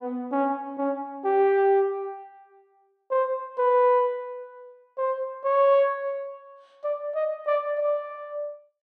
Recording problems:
none

